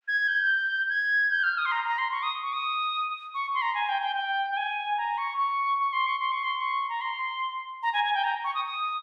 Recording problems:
none

